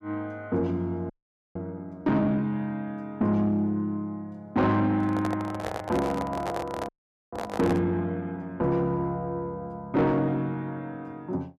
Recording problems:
distortion; soft clipping, signal-to-distortion ratio 10 dB
audio freezing; at 1 s and at 7 s
microphone handling noise; from 5 to 8 s; peak +1 dB vs average level

